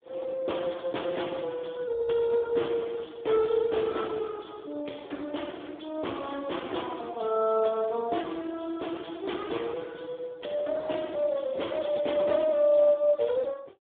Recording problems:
phone line; 260 Hz to 3.6 kHz, Speex

